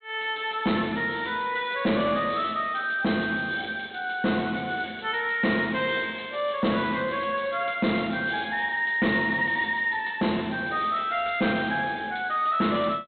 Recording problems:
treble cut off; nothing above 4 kHz
distorted audio; soft clipping, signal-to-distortion ratio 12 dB

